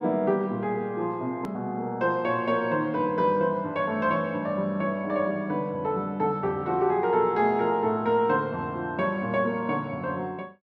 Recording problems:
click at an edit; at 1.5 s

